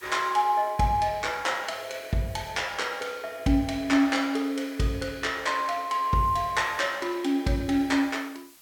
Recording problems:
background hiss; slope +2 dB per octave, SNR 25 dB

